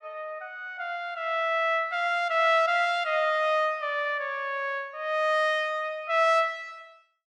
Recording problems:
none

